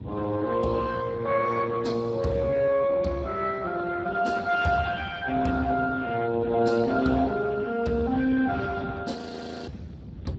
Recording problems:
codec artefacts; Speex, log-spectral distance 4 dB
low-frequency rumble; below 250 Hz, SNR 15 dB
frozen audio; at 9 s for 0.5 s

